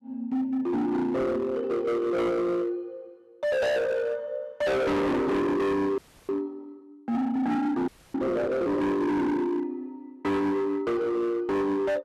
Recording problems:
distorted audio; hard clipping, signal-to-distortion ratio 6 dB
audio freezing; at 6 s and at 8 s

